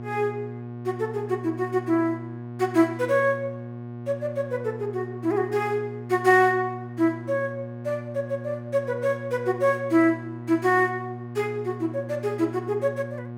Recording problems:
electrical hum; 60 Hz, harmonics up to 1.2 kHz, SNR 11 dB

